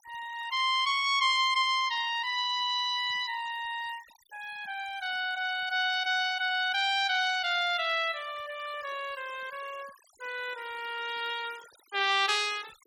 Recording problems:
denoising artefacts; signal-to-artefact ratio 21 dB

